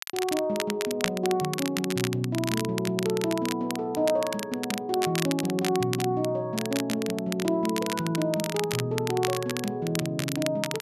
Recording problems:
crackle; vinyl, SNR 7 dB

